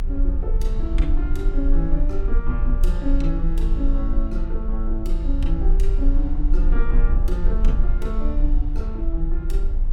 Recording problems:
low-frequency rumble; below 40 Hz, strongest tone 28 Hz, SNR -6 dB

